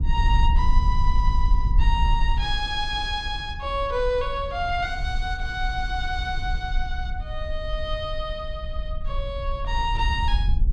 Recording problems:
rumble; below 56 Hz, SNR 0 dB

